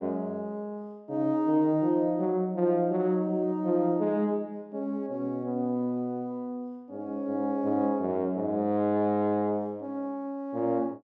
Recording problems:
none

